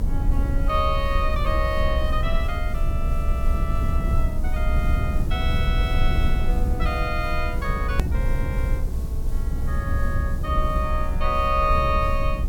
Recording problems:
background hiss; SNR 20 dB
rumble; below 68 Hz, strongest tone 22 Hz, SNR -2 dB
edit click; at 8 s

